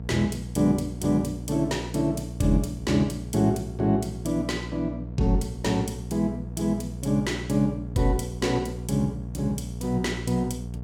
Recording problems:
electrical hum; 60 Hz, harmonics up to 720 Hz, SNR 9 dB

